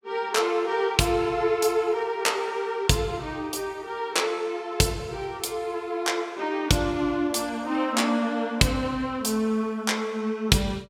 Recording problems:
none

